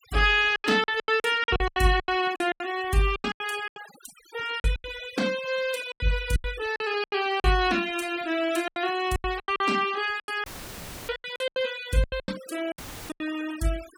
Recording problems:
denoising artefacts; signal-to-artefact ratio 17 dB
packet loss; 16% of the sound replaced, filled with silence
dropout; at 10 s for 0.5 s and at 13 s; filled with static

